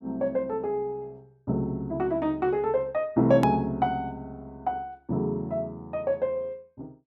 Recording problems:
click at an edit; at 3.5 s

